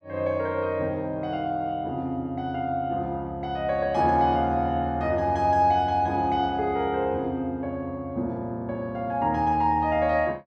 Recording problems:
none

